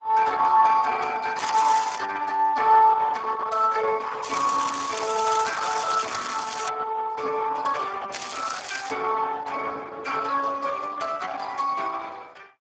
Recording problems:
lossy codec; Opus, then Speex, log-spectral distance 7 dB
crackle; at 1.5 s, from 4 to 6.5 s and at 8 s; loose cable, SNR 11 dB

